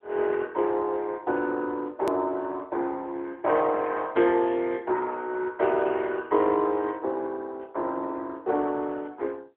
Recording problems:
phone line; 280 Hz to 3.4 kHz, AMR-NB
click at an edit; at 2 s

